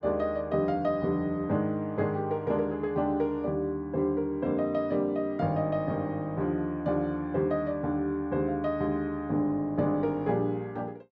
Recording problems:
none

